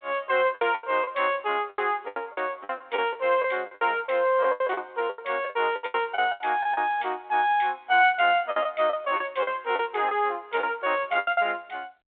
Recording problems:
phone line; 320 Hz to 3.3 kHz, G.726
packet loss; 13% of the sound replaced, filled with the last packet

